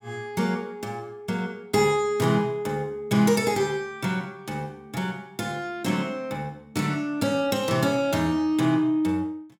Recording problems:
none

